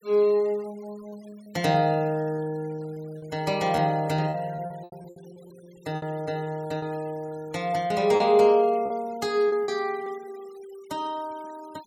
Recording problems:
noise reduction artefacts; signal-to-artefact ratio 25 dB
packet loss; 8% of the sound replaced, filled with repeated pitch periods

